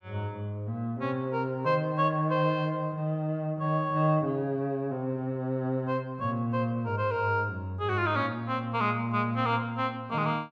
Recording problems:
none

